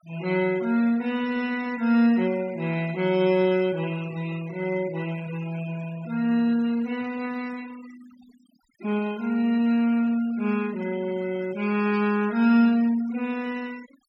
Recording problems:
noise reduction artefacts; signal-to-artefact ratio 20 dB

